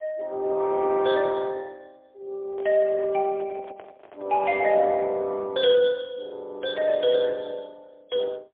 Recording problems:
phone line; 260 Hz to 3.7 kHz, AMR-NB, then MP3
microphone handling noise; from 2.5 to 5 s; peak -16 dB vs average level

